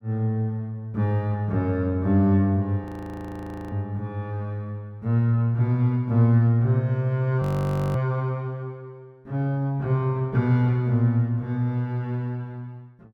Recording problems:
frozen audio; at 3 s for 1 s and at 7.5 s for 0.5 s

